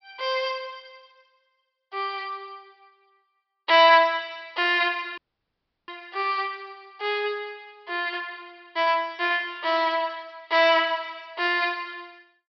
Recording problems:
low-pass filter; nothing above 5.5 kHz
dropout; at 5 s for 0.5 s

